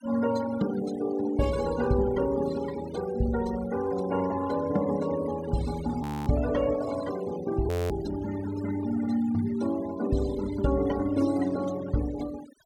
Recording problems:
noise reduction artefacts; signal-to-artefact ratio 16 dB
frozen audio; at 6 s and at 7.5 s

